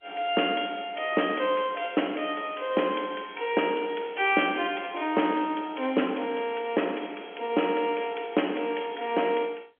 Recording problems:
telephone audio; 240 Hz to 3.4 kHz, G.711

